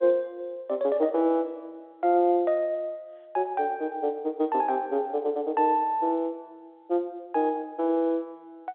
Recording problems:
telephone audio; 260 Hz to 3.8 kHz, G.711

